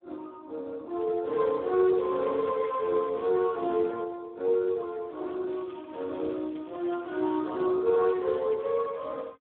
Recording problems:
telephone audio; 260 Hz to 2.1 kHz, Speex
crackle; from 2 to 4 s and from 5.5 to 7.5 s; loose cable, SNR 27 dB

